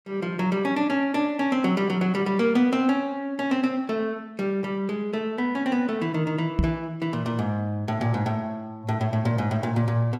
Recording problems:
microphone thump; at 6.5 s; peak +6 dB vs average level

